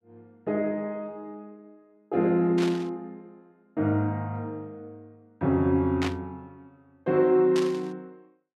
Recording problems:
burst of static; at 2.5 s, at 6 s and at 7.5 s; peak -3 dB vs average level

